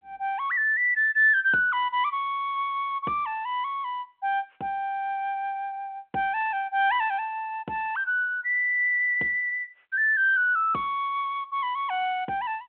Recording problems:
phone line; 300 Hz to 3.3 kHz, G.726

